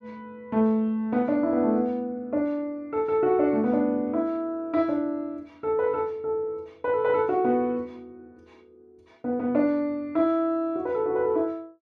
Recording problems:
none

